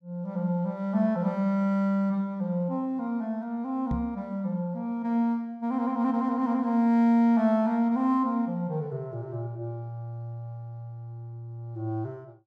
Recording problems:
microphone thump; at 4 s; peak 0 dB vs average level

